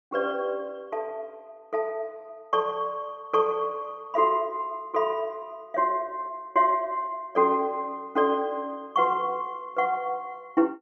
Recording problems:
none

